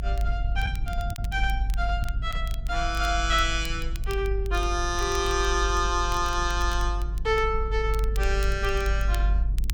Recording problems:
low-frequency rumble; below 50 Hz, strongest tone 48 Hz, SNR 2 dB
crackling; vinyl, SNR 19 dB
packet loss; 1.1% of the sound replaced, filled with the last packet

